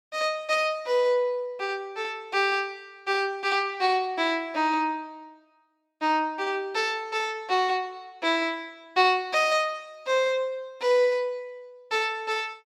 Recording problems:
none

